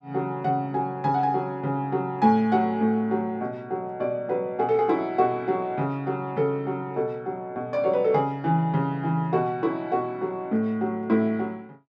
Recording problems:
none

